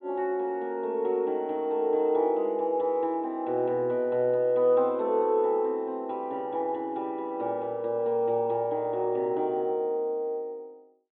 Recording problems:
treble missing; nothing above 4 kHz

